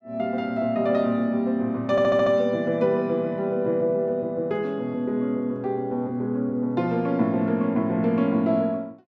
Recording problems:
stutter; at 2 s

